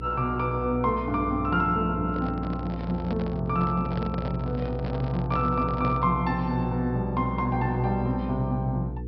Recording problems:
low-pass filter; nothing above 5.5 kHz
hum; 60 Hz, harmonics up to 480 Hz, SNR 8 dB
handling noise; from 2 to 6 s; peak -4 dB vs average level

